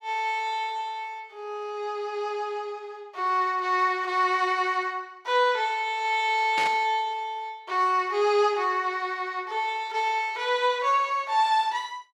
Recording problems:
static burst; at 6.5 s; peak -2 dB vs average level

